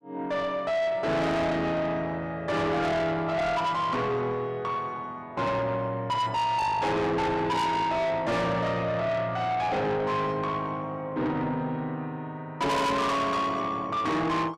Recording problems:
distortion; soft clipping, signal-to-distortion ratio 6 dB

